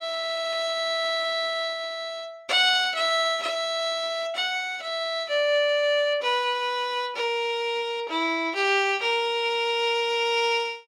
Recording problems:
none

